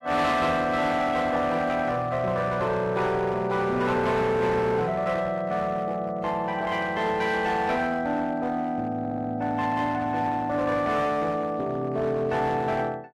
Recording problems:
codec artefacts; AAC, log-spectral distance 2 dB, nothing above 13.1 kHz
distorted audio; hard clipping, uneven, signal-to-distortion ratio 11 dB
audio stuttering; at 9 s

